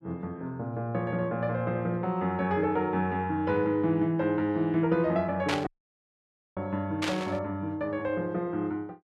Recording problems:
burst of static; at 5.5 s and at 7 s; peak +2 dB vs average level
audio cutting out; at 5.5 s for 1 s

